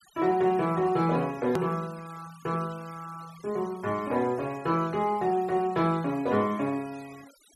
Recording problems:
denoising artefacts; signal-to-artefact ratio 23 dB
edit click; at 1.5 s

